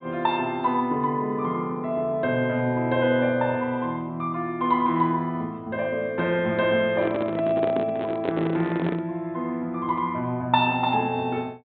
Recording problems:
low-pass filter; nothing above 4 kHz
handling noise; from 7 to 9 s; peak +1 dB vs average level

